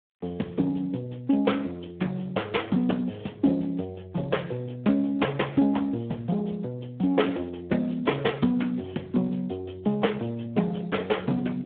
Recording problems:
phone line; 220 Hz to 3.5 kHz, Speex

